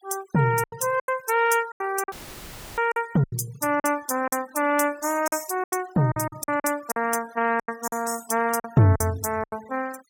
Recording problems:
noise reduction artefacts; signal-to-artefact ratio 19 dB
packet loss; 12% of the sound replaced, filled with silence
dropout; at 2 s for 0.5 s; filled with static

